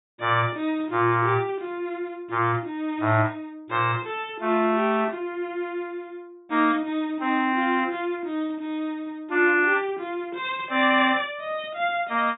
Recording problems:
treble cut off; nothing above 4 kHz

